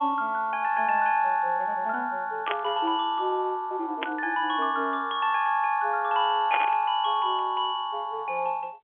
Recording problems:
telephone audio; 280 Hz to 3.4 kHz, G.711
static burst; at 2.5 s, at 4 s and at 6.5 s; peak +1 dB vs average level

